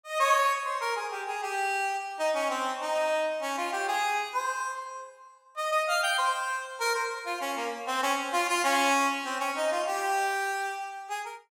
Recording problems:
none

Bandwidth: 17 kHz